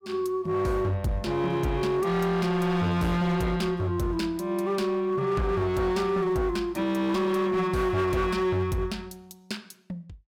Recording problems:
distorted audio; hard clipping, uneven, signal-to-distortion ratio 11 dB

